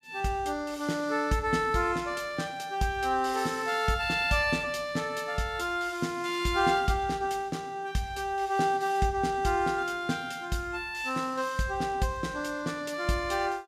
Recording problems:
none

